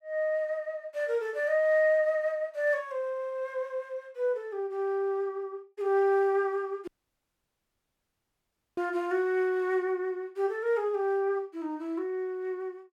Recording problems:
audio cutting out; at 7 s for 2 s

